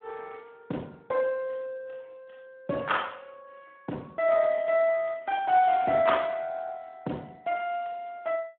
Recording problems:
phone line; 220 Hz to 3.6 kHz, Speex

